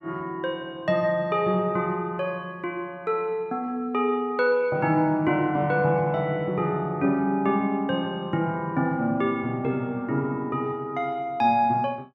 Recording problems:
none

